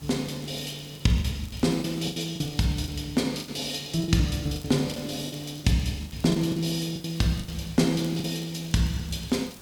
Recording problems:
hiss; SNR 20 dB
crackling; vinyl, SNR 26 dB
lost packets; 11% of the sound replaced, filled with the last packet

